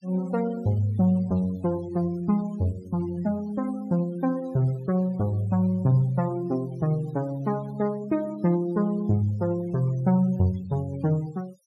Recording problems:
noise reduction artefacts; signal-to-artefact ratio 25 dB

